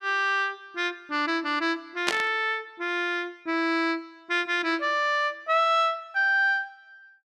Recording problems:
static burst; at 2 s; peak +4 dB vs average level

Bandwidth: 12.5 kHz